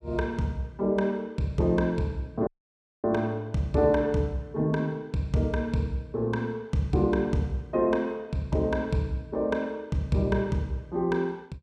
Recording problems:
dropout; at 2.5 s for 0.5 s

